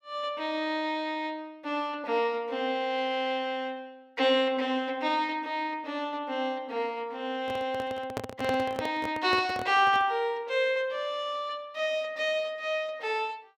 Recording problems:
handling noise; from 7.5 to 10 s; peak 0 dB vs average level

